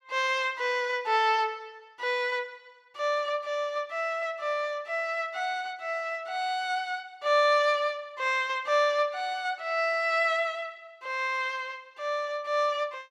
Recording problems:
none

